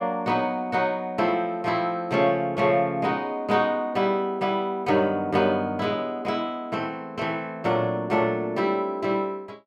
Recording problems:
none

